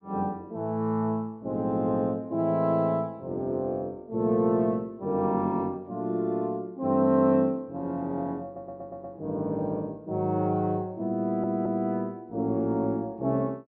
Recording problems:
low-pass filter; nothing above 5.5 kHz
stutter; at 8.5 s and at 11 s

